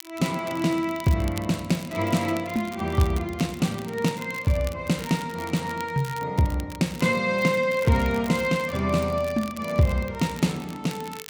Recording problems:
crackling; vinyl, SNR 18 dB

